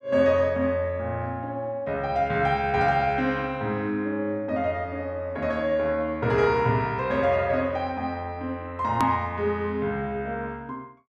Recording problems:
click at an edit; at 9 s

